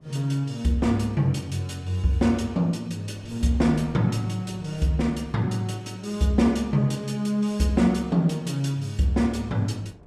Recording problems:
wind on the microphone; below 440 Hz, SNR 25 dB

